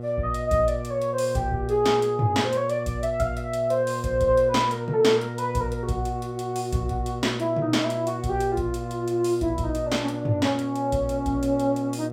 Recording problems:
hum; 60 Hz, harmonics up to 840 Hz, SNR 9 dB

